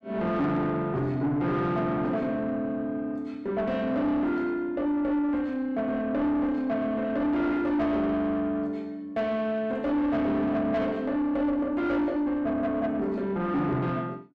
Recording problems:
distorted audio; soft clipping, signal-to-distortion ratio 10 dB

